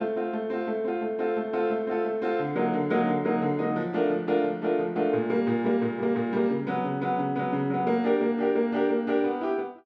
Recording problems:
none

